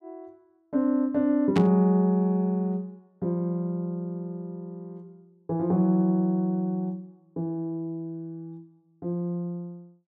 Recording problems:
burst of static; at 1.5 s; peak -4 dB vs average level

